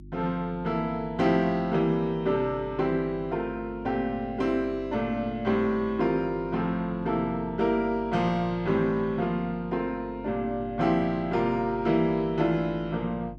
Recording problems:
electrical hum; 50 Hz, harmonics up to 350 Hz, SNR 18 dB

